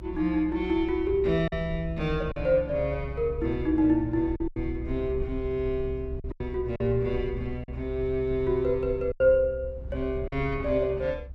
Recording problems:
low-frequency rumble; below 68 Hz, SNR 11 dB
lost packets; 5% of the sound replaced, filled with silence

